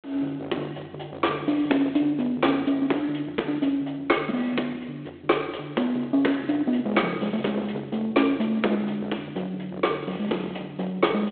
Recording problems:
phone line; 240 Hz to 3.6 kHz, G.726
distortion; hard clipping, signal-to-distortion ratio 18 dB

